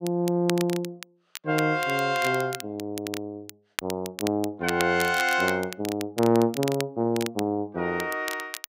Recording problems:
crackle; vinyl, SNR 11 dB

